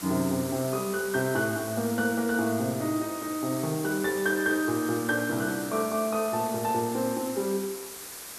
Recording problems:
hiss; slope -1 dB per octave, SNR 10 dB

